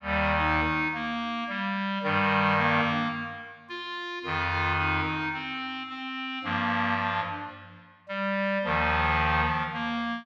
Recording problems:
none

